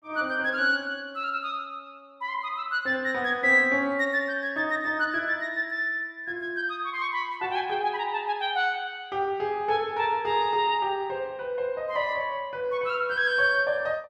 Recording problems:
none

